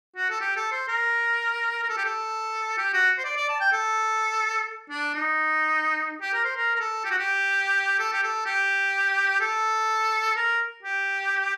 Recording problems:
none

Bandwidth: 14.5 kHz